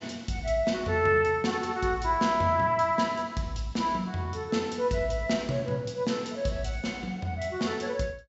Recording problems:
treble missing; nothing above 7.7 kHz

